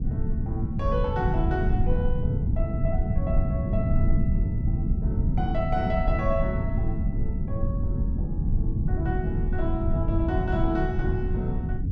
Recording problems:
rumble; below 140 Hz, SNR -5 dB

